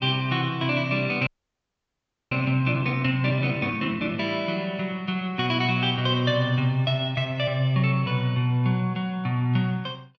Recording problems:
treble cut off; nothing above 8 kHz
frozen audio; at 1.5 s for 1 s

